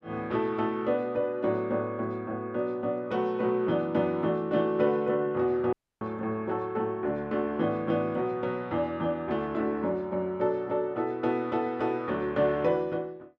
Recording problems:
dropout; at 5.5 s

